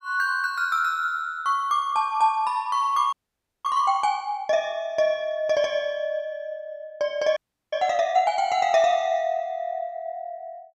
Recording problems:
audio freezing; at 3 s for 0.5 s and at 7.5 s

